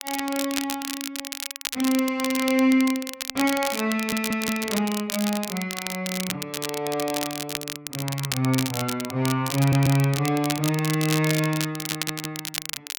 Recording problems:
crackle; vinyl, SNR 6 dB
stutter; at 4 s, at 9.5 s and at 12 s

